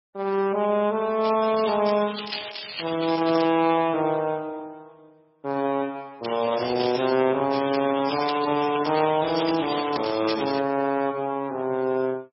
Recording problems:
lossy codec; Speex, then MP3, log-spectral distance 11 dB, nothing above 5.2 kHz
crackling; from 1 to 3.5 s, at 6 s and from 7.5 to 11 s; loose cable, SNR 8 dB

